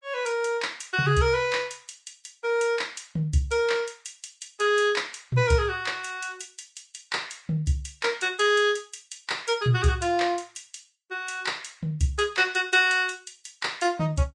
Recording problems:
lossy codec; Vorbis, log-spectral distance 3 dB

